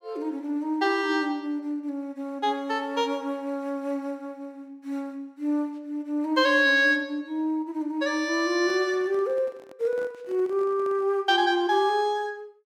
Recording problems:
handling noise; from 8.5 to 11 s; peak -13 dB vs average level

